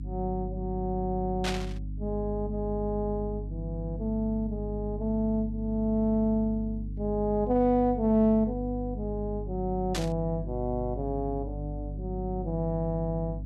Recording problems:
electrical hum; 50 Hz, harmonics up to 300 Hz, SNR 7 dB
burst of static; at 1.5 s and at 10 s; peak +2 dB vs average level

